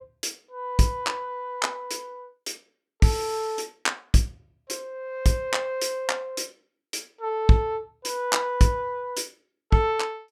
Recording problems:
none

